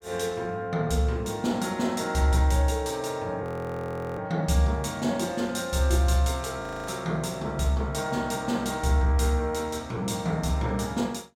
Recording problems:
audio freezing; at 3.5 s for 0.5 s and at 6.5 s

